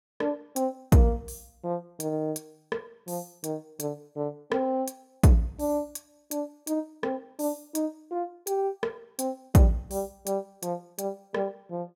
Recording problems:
none

